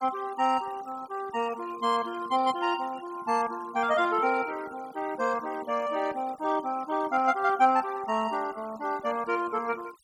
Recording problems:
denoising artefacts; signal-to-artefact ratio 20 dB

